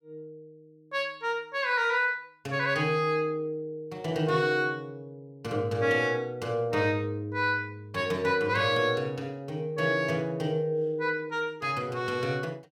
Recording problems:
none

